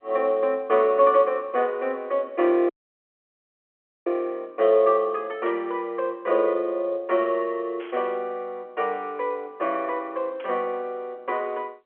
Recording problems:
telephone audio; 280 Hz to 3.5 kHz, G.711
audio cutting out; at 2.5 s for 1.5 s
static burst; at 5.5 s, at 8 s and at 10 s; peak -15 dB vs average level

